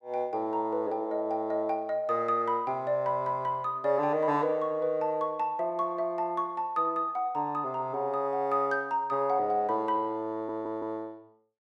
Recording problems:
stutter; at 10 s

